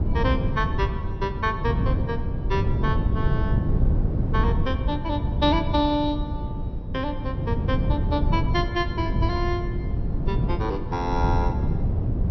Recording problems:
treble cut off; nothing above 5.9 kHz
wind noise; below 150 Hz, SNR -2 dB

